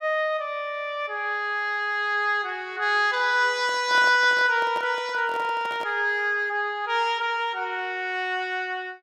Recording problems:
microphone handling noise; from 3.5 to 6 s; peak -9 dB vs average level

